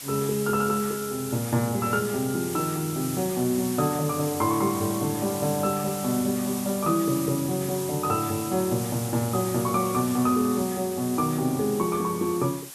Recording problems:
hiss; slope +1 dB per octave, SNR 9 dB

